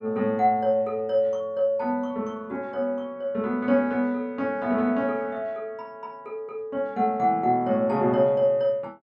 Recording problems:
none

